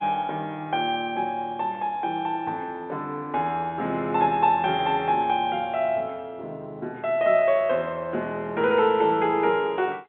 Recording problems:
phone line; 220 Hz to 3.5 kHz, G.711

